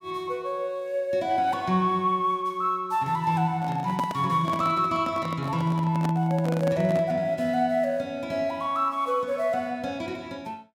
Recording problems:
microphone handling noise; from 3.5 to 7 s; peak -3 dB vs average level

